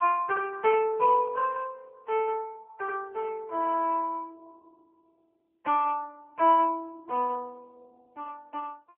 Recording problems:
phone line; 340 Hz to 3.2 kHz, AMR-NB

